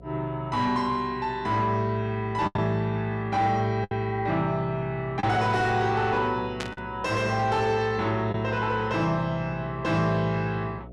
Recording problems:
distorted audio; soft clipping, signal-to-distortion ratio 12 dB
electrical hum; 60 Hz, harmonics up to 720 Hz, SNR 19 dB
lost packets; 2% of the sound replaced, filled with the last packet
burst of static; at 6.5 s; peak -3 dB vs average level

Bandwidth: 12 kHz